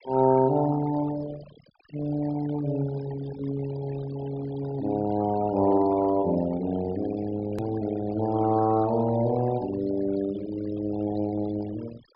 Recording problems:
treble missing; nothing above 5.5 kHz
noise reduction artefacts; signal-to-artefact ratio 16 dB
click at an edit; at 7.5 s

